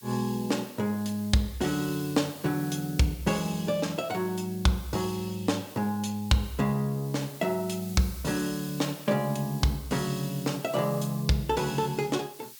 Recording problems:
hiss; slope +4 dB per octave, SNR 16 dB

